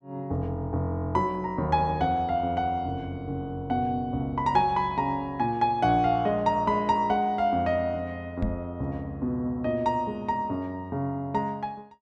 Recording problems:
microphone thump; at 8.5 s; peak +2 dB vs average level

